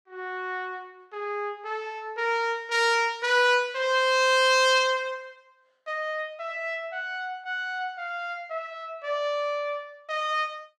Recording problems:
none

